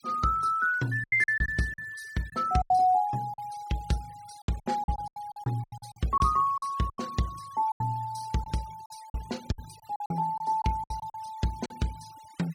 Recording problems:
denoising artefacts; signal-to-artefact ratio 22 dB
lost packets; 12% of the sound replaced, filled with silence

